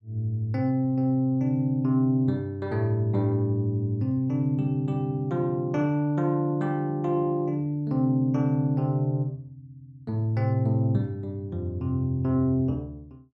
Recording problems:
none

